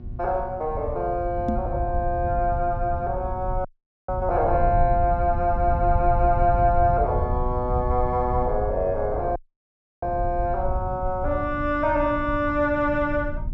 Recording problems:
hum; 60 Hz, harmonics up to 720 Hz, SNR 19 dB
low-frequency rumble; below 90 Hz, SNR 6 dB
knock on the microphone; at 1.5 s; peak +2 dB vs average level
audio cutting out; at 3.5 s and at 9.5 s for 0.5 s

